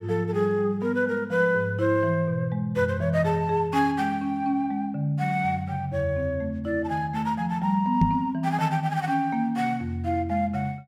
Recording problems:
microphone thump; at 8 s; peak +7 dB vs average level

